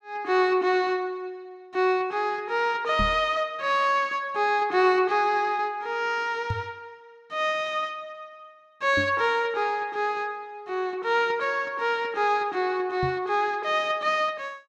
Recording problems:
knock on the microphone; 4 times, first at 3 s; peak -1 dB vs average level

